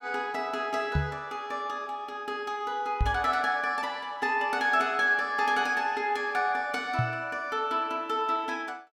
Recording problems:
microphone thump; at 1 s, at 3 s and at 7 s; peak +4 dB vs average level

